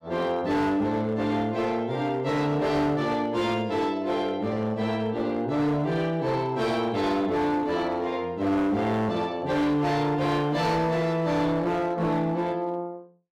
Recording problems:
distortion; hard clipping, signal-to-distortion ratio 11 dB

